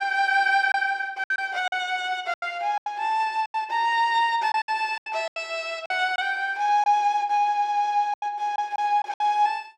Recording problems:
packet loss; 9% of the sound replaced, filled with silence

